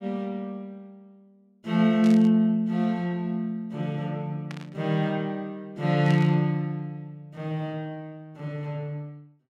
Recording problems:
burst of static; at 2 s, at 4.5 s and at 6 s; peak -10 dB vs average level

